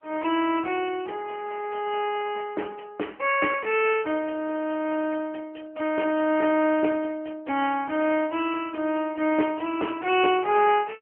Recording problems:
telephone audio; 240 Hz to 3.1 kHz, AMR-NB

